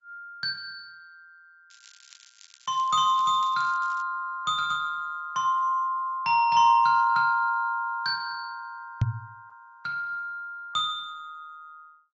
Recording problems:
low-pass filter; nothing above 6.9 kHz
codec artefacts; Opus, log-spectral distance 2 dB
crackling; from 1.5 to 4 s; loose cable, SNR 27 dB
knock on the microphone; at 9 s; peak +5 dB vs average level

